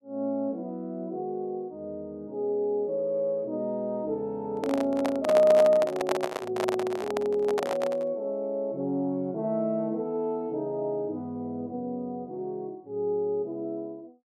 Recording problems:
microphone handling noise; from 4.5 to 8 s; peak +4 dB vs average level

